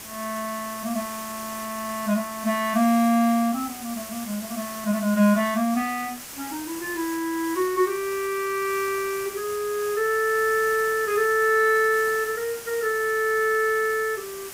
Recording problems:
background hiss; slope -1 dB per octave, SNR 12 dB

